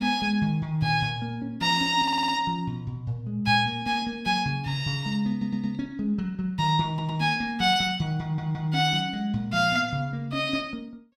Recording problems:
stutter; 4 times, first at 2 s

